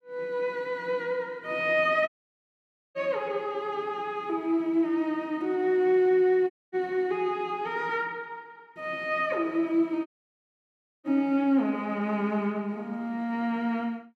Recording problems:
audio cutting out; at 2 s for 1 s, at 6.5 s and at 10 s for 1 s

